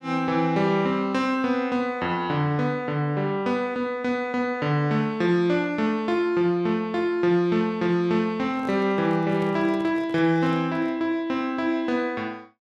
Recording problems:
microphone handling noise; from 8.5 to 11 s; peak -12 dB vs average level

